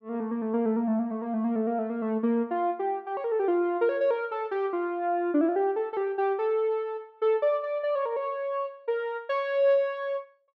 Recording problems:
none

